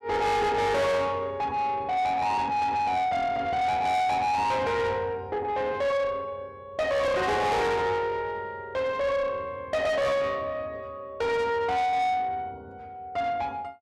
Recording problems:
distortion; soft clipping, signal-to-distortion ratio 7 dB

